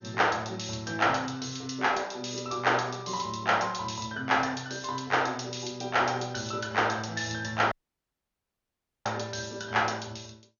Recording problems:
codec artefacts; MP2, log-spectral distance 8 dB, nothing above 6.7 kHz
audio cutting out; at 7.5 s for 1.5 s

